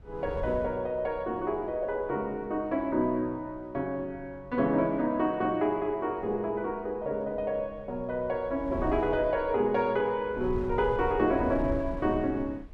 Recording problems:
wind on the microphone; below 110 Hz, SNR 14 dB

